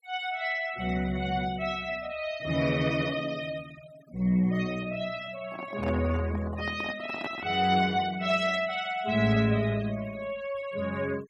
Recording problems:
noise reduction artefacts; signal-to-artefact ratio 20 dB
microphone handling noise; from 5.5 to 7.5 s; peak -3 dB vs average level

